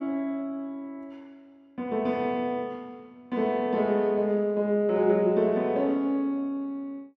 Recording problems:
none

